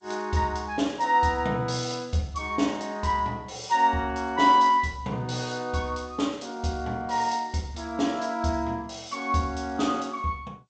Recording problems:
codec artefacts; G.722, log-spectral distance 3 dB

